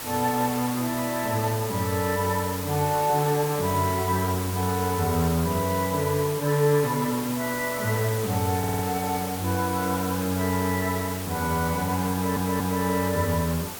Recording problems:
background hiss; slope -3 dB per octave, SNR 8 dB
stutter; at 8.5 s and at 12 s

